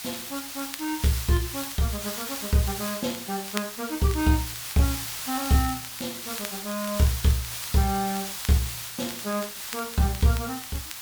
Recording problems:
hiss; slope +2 dB per octave, SNR 5 dB
crackling; vinyl, SNR 17 dB

